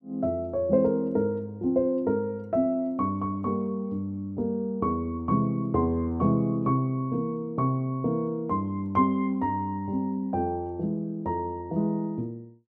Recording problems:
none

